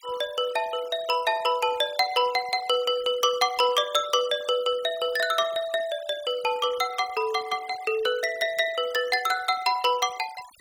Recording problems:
denoising artefacts; signal-to-artefact ratio 20 dB

